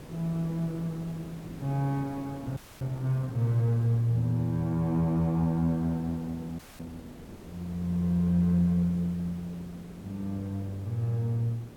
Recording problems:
hiss; slope -7 dB per octave, SNR 17 dB
audio freezing; at 2.5 s and at 6.5 s

